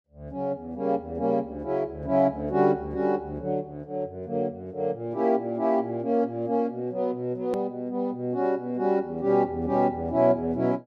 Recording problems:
hard cut with a click; at 7.5 s

